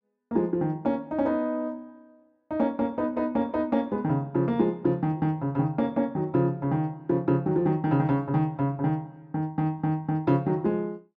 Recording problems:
none

